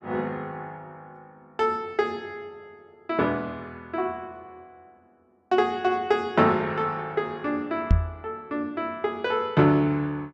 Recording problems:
knock on the microphone; at 8 s; peak +9 dB vs average level

